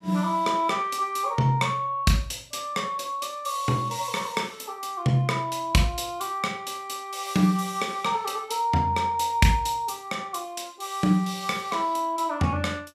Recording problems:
none

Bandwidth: 14.5 kHz